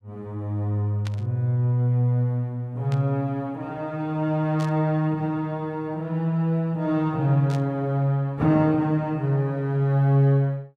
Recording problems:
static burst; 4 times, first at 1 s; peak -11 dB vs average level

